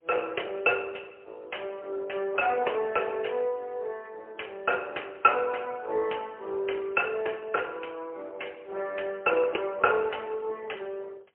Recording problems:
phone line; 340 Hz to 3.7 kHz, AMR-NB, then MP3

